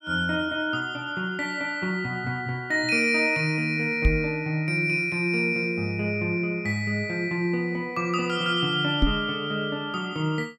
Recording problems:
microphone thump; at 4 s and at 9 s; peak +7 dB vs average level

